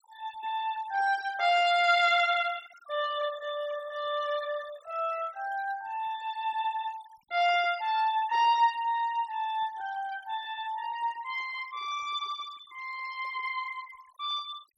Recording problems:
noise reduction artefacts; signal-to-artefact ratio 19 dB

